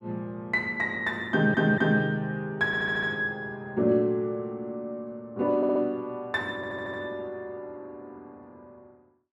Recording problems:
stutter; 4 times, first at 1.5 s

